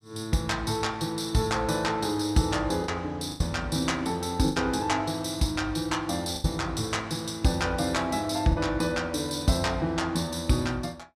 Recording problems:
packet loss; 3% of the sound replaced, filled with the last packet

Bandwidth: 14.5 kHz